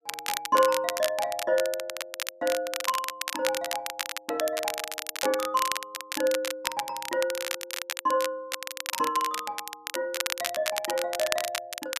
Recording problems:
crackle; vinyl, SNR 4 dB

